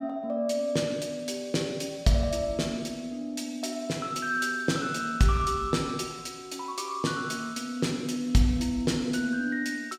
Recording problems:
none

